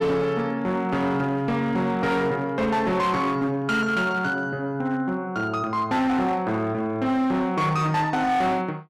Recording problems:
distorted audio; hard clipping, signal-to-distortion ratio 11 dB

